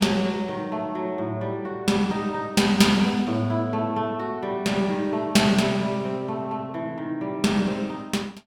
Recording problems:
none

